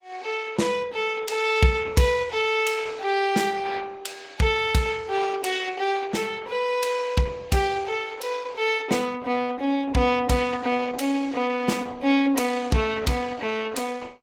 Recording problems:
codec artefacts; Opus, log-spectral distance 4 dB

